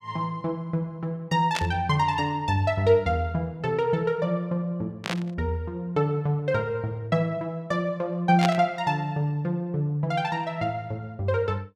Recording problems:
static burst; at 1.5 s, at 5 s and at 8.5 s; peak +2 dB vs average level

